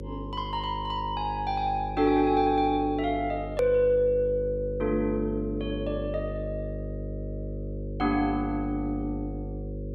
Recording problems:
electrical hum; 50 Hz, harmonics up to 550 Hz, SNR 9 dB
edit click; at 3.5 s

